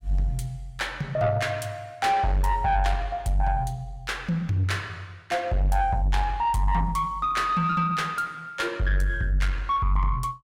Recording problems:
distortion; soft clipping, signal-to-distortion ratio 11 dB

